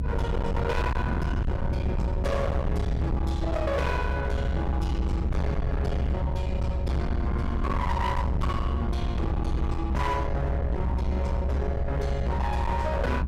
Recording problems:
distortion; hard clipping, signal-to-distortion ratio 6 dB
rumble; below 140 Hz, SNR -2 dB

